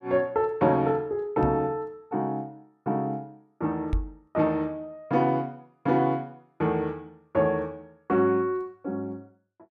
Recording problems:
microphone bump; at 1.5 s and at 4 s; peak +3 dB vs average level

